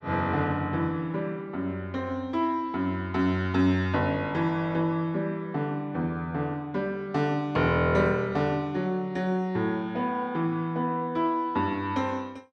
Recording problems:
none

